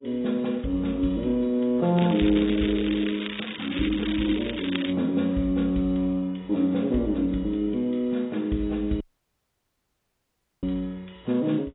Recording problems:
lossy compression; AAC, log-spectral distance 6 dB, nothing above 3.8 kHz
crackle; from 2 to 5 s; loose cable, SNR 10 dB
audio cutting out; at 9 s for 1.5 s

